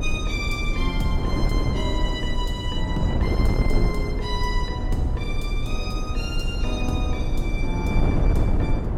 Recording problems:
low-frequency rumble; below 38 Hz, strongest tone 36 Hz, SNR 2 dB
wind noise; below 200 Hz, SNR -3 dB

